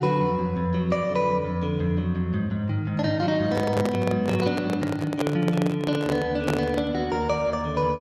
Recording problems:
handling noise; from 3.5 to 7 s; peak +2 dB vs average level

